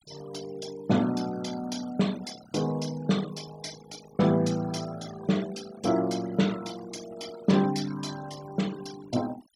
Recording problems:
denoising artefacts; signal-to-artefact ratio 16 dB

